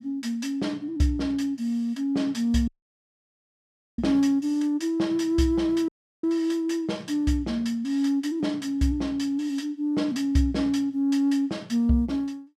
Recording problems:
audio cutting out; at 2.5 s for 1.5 s and at 6 s

